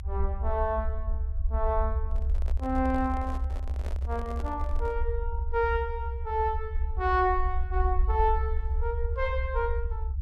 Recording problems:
rumble; below 68 Hz, SNR 1 dB
handling noise; from 2 to 5 s; peak -8 dB vs average level

